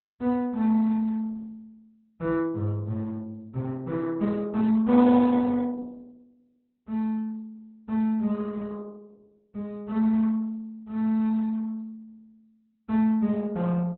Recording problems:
lossy codec; Opus, log-spectral distance 2 dB, nothing above 4 kHz

